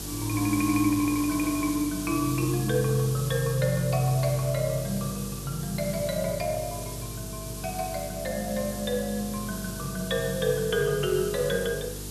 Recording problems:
electrical hum; 50 Hz, harmonics up to 450 Hz, SNR 12 dB
hiss; SNR 10 dB

